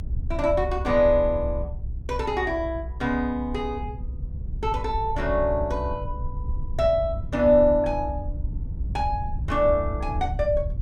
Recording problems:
low-frequency rumble; below 84 Hz, SNR 8 dB

